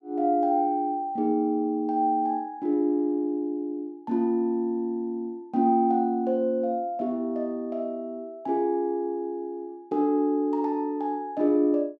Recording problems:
none

